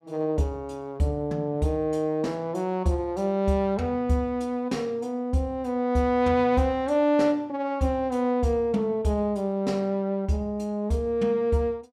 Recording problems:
none

